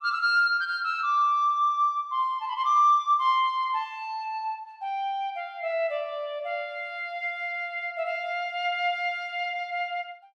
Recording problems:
none

